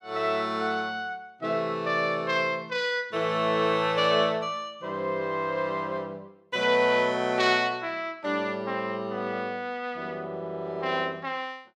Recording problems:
none

